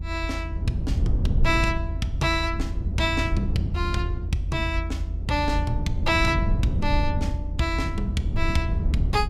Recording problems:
rumble; below 94 Hz, SNR 0 dB

